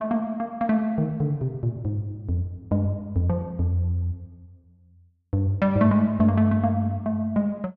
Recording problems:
none

